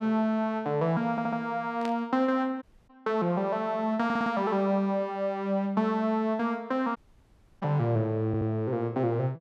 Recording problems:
audio stuttering; at 1 s, at 4 s and at 8.5 s
static burst; at 2 s; peak -8 dB vs average level
dropout; at 2.5 s and at 7 s for 0.5 s

